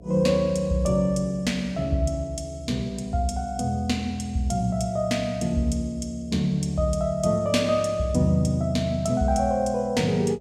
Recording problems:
electrical hum; 60 Hz, harmonics up to 720 Hz, SNR 24 dB

